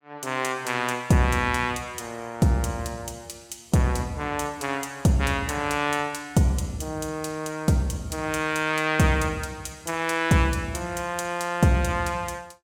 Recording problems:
none

